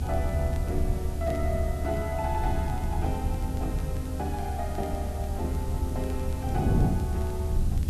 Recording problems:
hiss; SNR 13 dB
low-frequency rumble; below 78 Hz, strongest tone 74 Hz, SNR -2 dB
wind on the microphone; below 210 Hz, SNR 1 dB
crackling; vinyl, SNR 24 dB

